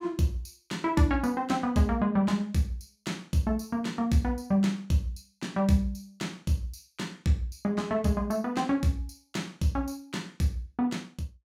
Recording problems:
none

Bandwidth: 16.5 kHz